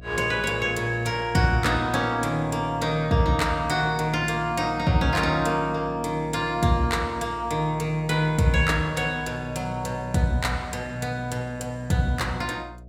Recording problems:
electrical hum; 60 Hz, harmonics up to 720 Hz, SNR 19 dB

